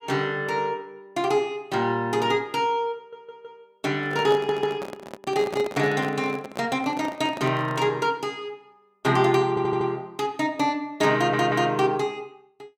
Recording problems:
stutter; 4 times, first at 3 s
microphone handling noise; from 4 to 8 s; peak -4 dB vs average level

